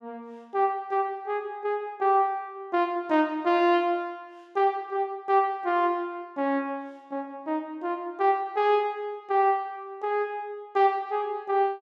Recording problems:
none

